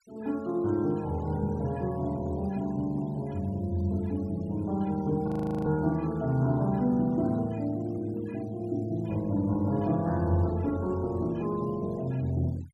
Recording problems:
denoising artefacts; signal-to-artefact ratio 26 dB
audio freezing; at 5.5 s

